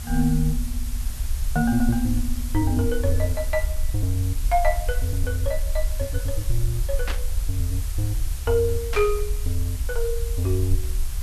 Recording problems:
background hiss; slope 0 dB per octave, SNR 13 dB
low-frequency rumble; below 56 Hz, SNR 4 dB
static burst; at 7 s and at 9 s; peak -2 dB vs average level

